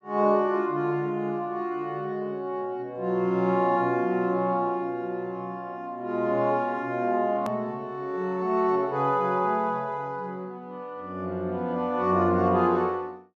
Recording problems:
edit click; at 7.5 s

